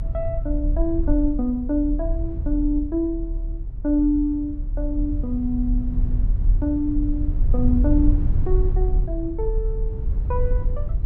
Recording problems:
rumble; below 60 Hz, strongest tone 36 Hz, SNR 0 dB

